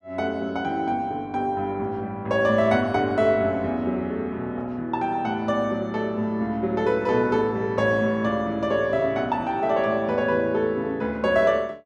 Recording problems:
none

